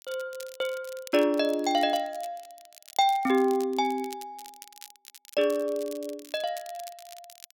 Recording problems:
crackling; vinyl, SNR 19 dB

